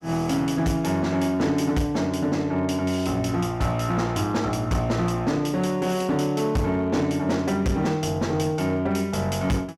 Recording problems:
distortion; hard clipping, signal-to-distortion ratio 11 dB

